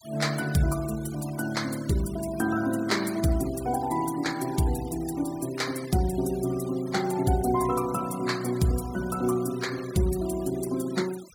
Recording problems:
noise reduction artefacts; signal-to-artefact ratio 17 dB

